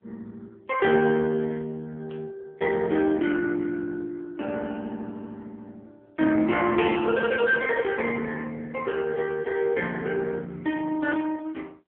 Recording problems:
telephone audio; 240 Hz to 3.1 kHz, AMR-NB
static burst; at 2 s and at 7.5 s; peak -15 dB vs average level

